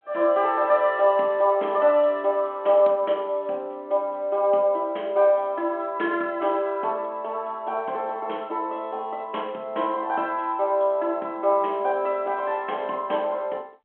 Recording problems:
telephone audio; 240 Hz to 3.6 kHz, G.726

